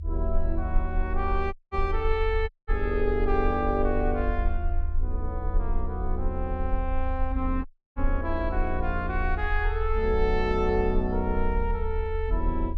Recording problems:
rumble; below 62 Hz, SNR 2 dB
audio cutting out; at 1.5 s, at 2.5 s and at 7.5 s

